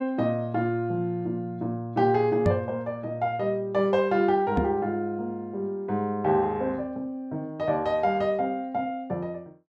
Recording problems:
knock on the microphone; at 2.5 s and at 4.5 s; peak +5 dB vs average level

